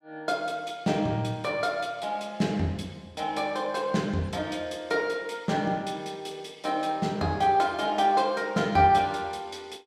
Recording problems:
none

